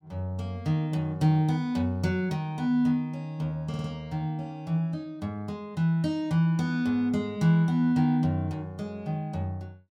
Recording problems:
stutter; at 3.5 s

